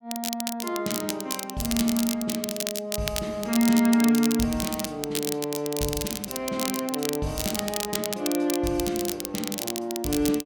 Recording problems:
crackle; vinyl, SNR 4 dB

